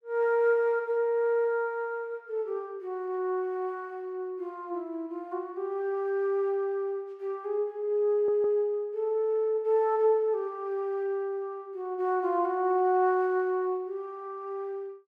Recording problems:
stutter; at 8 s

